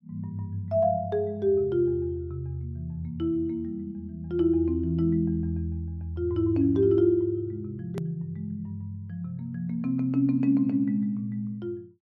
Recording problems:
click at an edit; at 8 s

